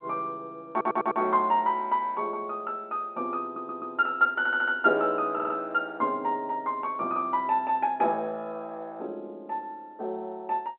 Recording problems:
telephone audio; 280 Hz to 3.3 kHz, G.711
stutter; 4 times, first at 0.5 s

